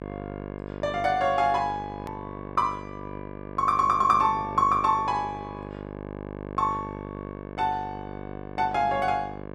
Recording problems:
hum; 50 Hz, harmonics up to 2.2 kHz, SNR 13 dB
click at an edit; at 2 s

